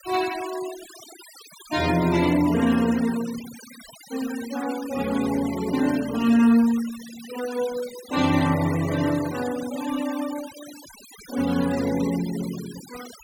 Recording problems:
noise reduction artefacts; signal-to-artefact ratio 15 dB

